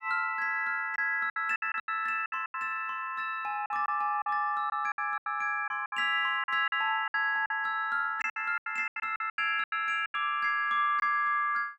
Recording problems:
packet loss; 12% of the sound replaced, filled with silence

